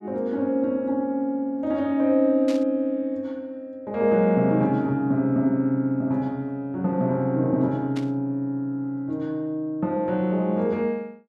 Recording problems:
static burst; at 2.5 s and at 8 s; peak -10 dB vs average level

